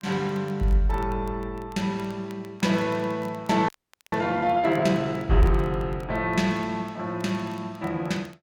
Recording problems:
crackling; vinyl, SNR 28 dB
frozen audio; at 3.5 s

